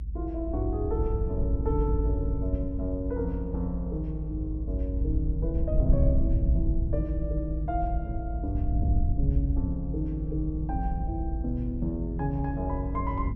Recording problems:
rumble; below 70 Hz, strongest tone 52 Hz, SNR -2 dB

